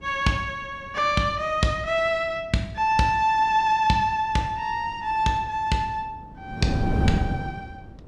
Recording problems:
wind on the microphone; below 250 Hz, SNR 3 dB

